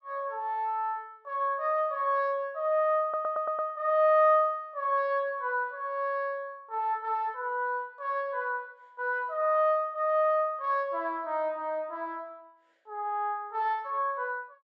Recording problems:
stutter; at 3 s

